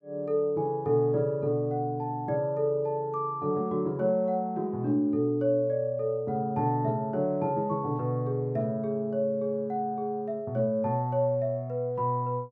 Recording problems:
none

